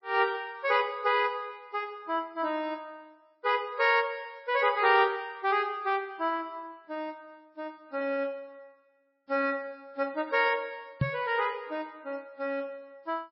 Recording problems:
codec artefacts; MP3, log-spectral distance 2 dB, nothing above 4.6 kHz
knock on the microphone; at 11 s; peak +6 dB vs average level

